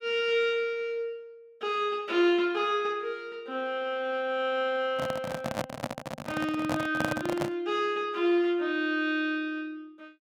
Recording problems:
handling noise; from 5 to 7.5 s; peak +2 dB vs average level

